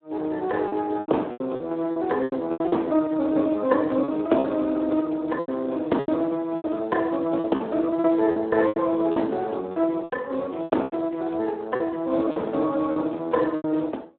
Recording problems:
phone line; 220 Hz to 3.4 kHz, Speex
lost packets; 11% of the sound replaced, filled with repeated pitch periods

